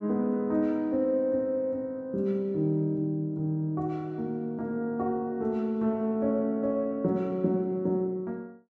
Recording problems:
none

